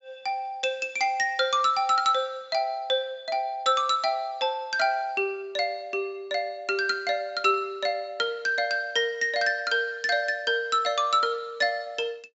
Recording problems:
treble missing; nothing above 8 kHz

